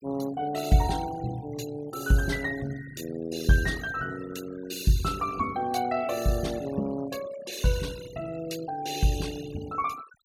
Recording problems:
denoising artefacts; signal-to-artefact ratio 16 dB

